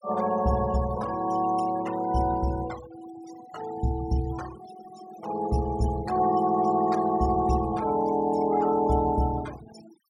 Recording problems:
denoising artefacts; signal-to-artefact ratio 17 dB

